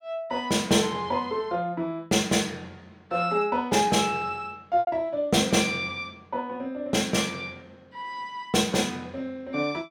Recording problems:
lost packets; 1.1% of the sound replaced, filled with repeated pitch periods

